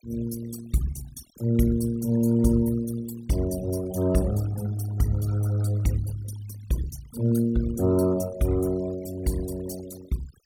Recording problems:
noise reduction artefacts; signal-to-artefact ratio 18 dB

